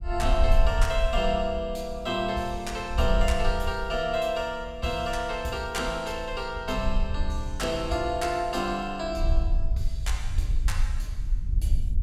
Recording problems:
wind on the microphone; below 56 Hz, SNR 2 dB

